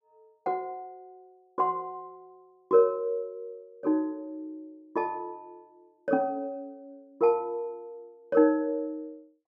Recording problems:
none

